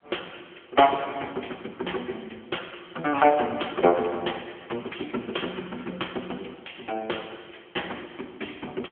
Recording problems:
phone line; 300 Hz to 3.2 kHz, AMR-NB

